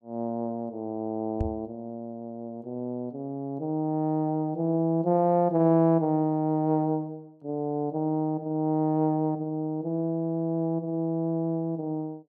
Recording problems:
microphone bump; at 1.5 s; peak +1 dB vs average level

